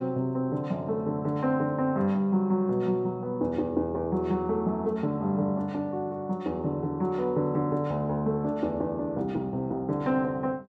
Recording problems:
none

